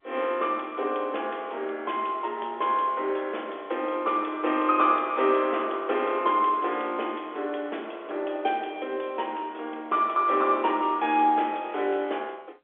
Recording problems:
phone line; 320 Hz to 3.5 kHz, G.711

